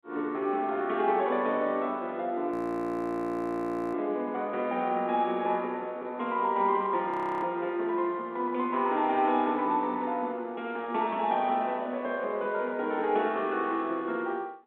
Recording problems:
telephone audio; 220 Hz to 3.8 kHz, G.726
frozen audio; at 2.5 s for 1.5 s and at 7 s

